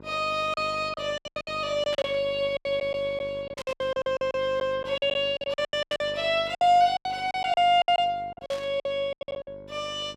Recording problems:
hum; 50 Hz, harmonics up to 1.6 kHz, SNR 20 dB
packet loss; 18% of the sound replaced, filled with silence
burst of static; 4 times, first at 2 s; peak -8 dB vs average level

